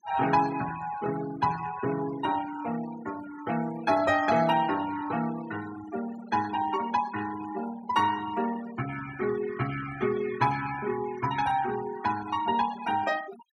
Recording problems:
denoising artefacts; signal-to-artefact ratio 14 dB

